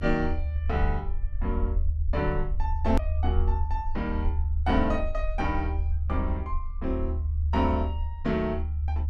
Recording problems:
rumble; below 76 Hz, SNR -1 dB
edit click; at 3 s

